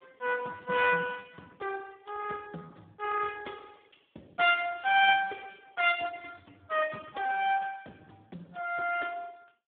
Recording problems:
phone line; 240 Hz to 3.4 kHz, Speex

